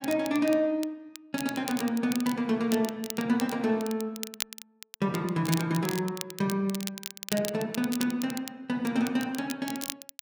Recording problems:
crackling; vinyl, SNR 10 dB

